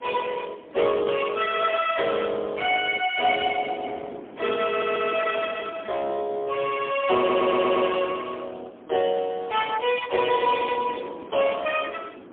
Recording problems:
telephone audio; 280 Hz to 3.3 kHz, AMR-NB, then MP3
wind noise; below 550 Hz, SNR 19 dB
stutter; at 4.5 s and at 7 s

